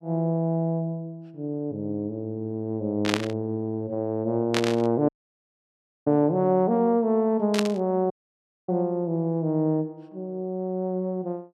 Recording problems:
static burst; at 3 s, at 4.5 s and at 7.5 s; peak +5 dB vs average level
dropout; at 5 s for 1 s and at 8 s for 0.5 s

